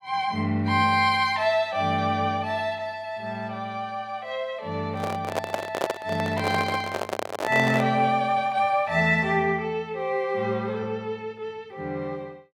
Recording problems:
handling noise; from 5 to 8 s; peak +2 dB vs average level

